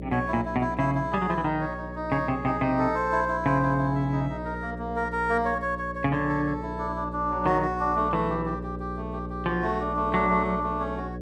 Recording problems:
mains hum; 60 Hz, harmonics up to 600 Hz, SNR 10 dB

